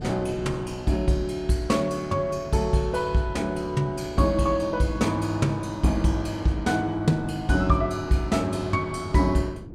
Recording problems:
wind noise; below 300 Hz, SNR 17 dB

